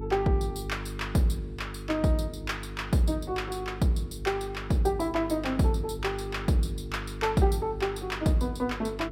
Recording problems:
electrical hum; 50 Hz, harmonics up to 450 Hz, SNR 10 dB

